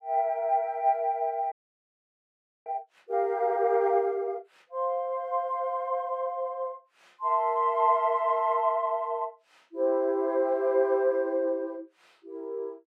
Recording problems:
frozen audio; at 1.5 s for 1 s

